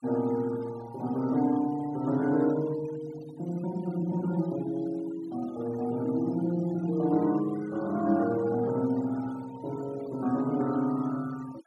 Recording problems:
noise reduction artefacts; signal-to-artefact ratio 20 dB

